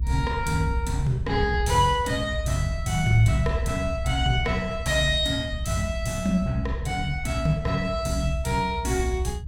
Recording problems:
rumble; below 74 Hz, strongest tone 60 Hz, SNR 5 dB

